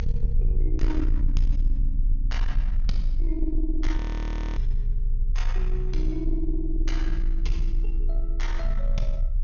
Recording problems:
treble cut off; nothing above 6.7 kHz
distortion; soft clipping, signal-to-distortion ratio 12 dB
low-frequency rumble; below 38 Hz, strongest tone 28 Hz, SNR -6 dB
audio freezing; at 4 s for 0.5 s

